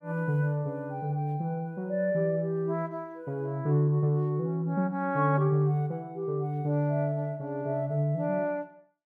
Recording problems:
none

